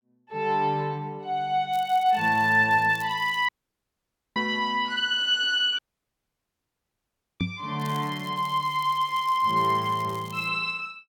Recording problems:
crackling; from 1.5 to 3.5 s and from 8 to 10 s; loose cable, SNR 24 dB
audio cutting out; at 3.5 s for 1 s and at 6 s for 1.5 s
knock on the microphone; at 7.5 s; peak 0 dB vs average level

